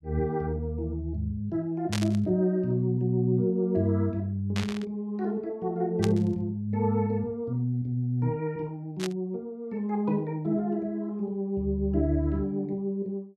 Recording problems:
static burst; 4 times, first at 2 s; peak 0 dB vs average level

